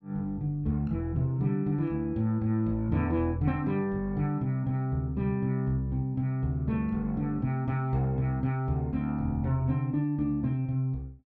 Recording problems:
none

